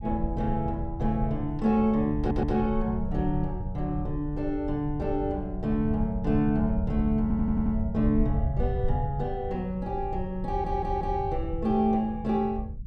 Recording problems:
low-frequency rumble; below 96 Hz, SNR 6 dB
audio stuttering; at 2 s, at 7 s and at 10 s

